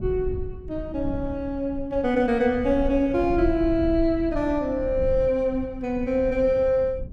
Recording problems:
rumble; below 84 Hz, SNR 12 dB

